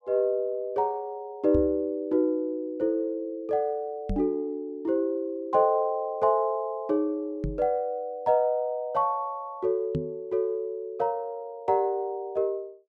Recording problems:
microphone bump; 4 times, first at 1.5 s; peak +1 dB vs average level

